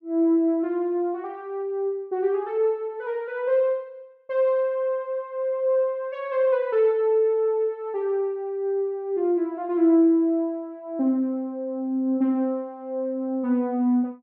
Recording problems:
none

